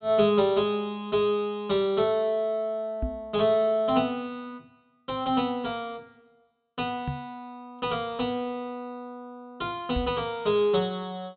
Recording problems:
treble cut off; nothing above 4 kHz
microphone thump; at 3 s, at 7 s and at 10 s; peak 0 dB vs average level

